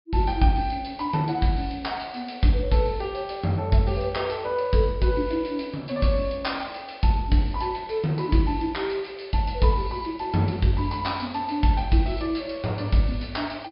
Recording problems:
treble missing; nothing above 5.5 kHz

